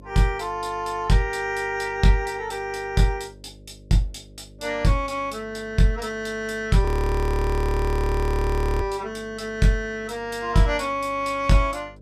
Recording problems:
electrical hum; 50 Hz, harmonics up to 600 Hz, SNR 23 dB
audio freezing; at 7 s for 2 s

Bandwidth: 14.5 kHz